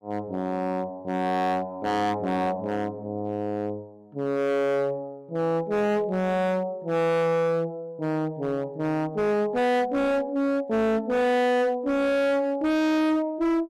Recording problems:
distortion; hard clipping, signal-to-distortion ratio 6 dB

